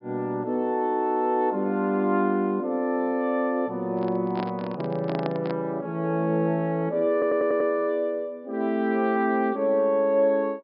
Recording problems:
low-pass filter; nothing above 5.5 kHz
microphone handling noise; from 4 to 5.5 s; peak -4 dB vs average level
audio stuttering; at 7 s

